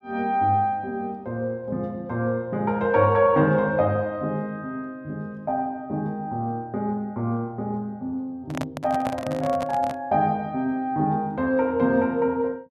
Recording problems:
handling noise; from 8.5 to 10 s; peak -1 dB vs average level

